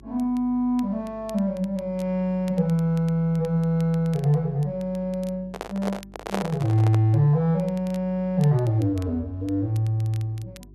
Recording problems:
hum; 50 Hz, harmonics up to 400 Hz, SNR 25 dB
crackling; vinyl, SNR 28 dB
handling noise; from 5.5 to 7 s; peak 0 dB vs average level

